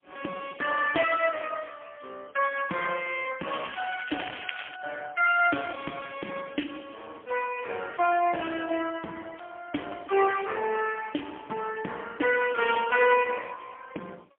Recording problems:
telephone audio; 220 Hz to 3.2 kHz, AMR-NB, then MP3
crackle; from 3.5 to 4.5 s; loose cable, SNR 12 dB

